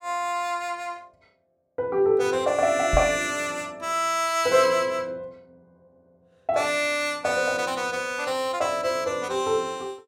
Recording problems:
knock on the microphone; at 3 s; peak +1 dB vs average level

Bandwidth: 17.5 kHz